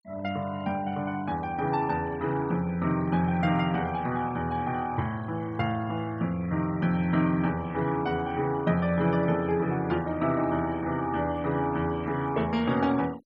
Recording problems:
noise reduction artefacts; signal-to-artefact ratio 22 dB

